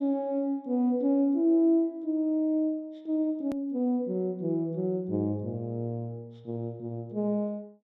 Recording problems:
edit click; at 3.5 s

